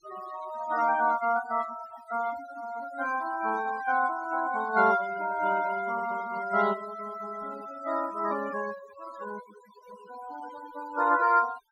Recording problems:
noise reduction artefacts; signal-to-artefact ratio 15 dB

